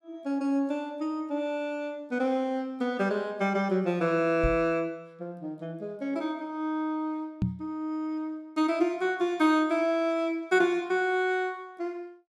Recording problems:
microphone thump; at 4.5 s and at 7.5 s; peak +4 dB vs average level

